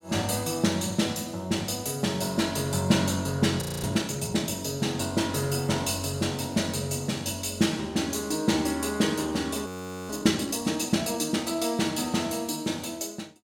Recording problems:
frozen audio; at 3.5 s and at 9.5 s

